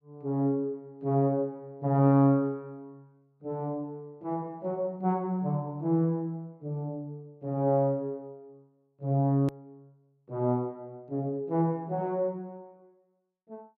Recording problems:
click at an edit; at 9.5 s

